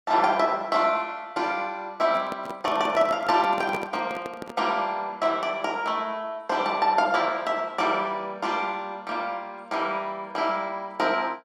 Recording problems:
microphone handling noise; from 2 to 4.5 s; peak -3 dB vs average level

